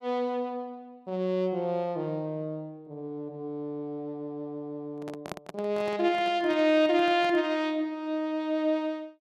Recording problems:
microphone handling noise; from 5 to 7.5 s; peak -3 dB vs average level

